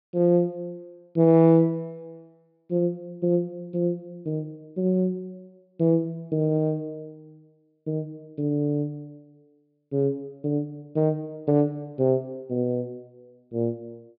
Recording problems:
treble missing; nothing above 5.2 kHz

